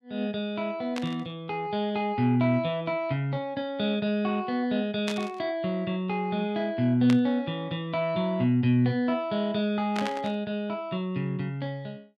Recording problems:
burst of static; 4 times, first at 1 s; peak -2 dB vs average level

